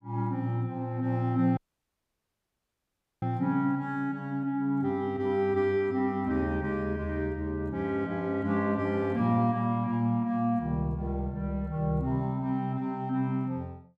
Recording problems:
dropout; at 1.5 s for 1.5 s

